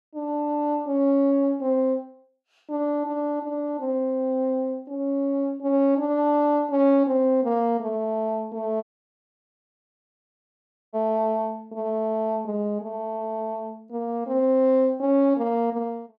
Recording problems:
audio cutting out; at 9 s for 2 s

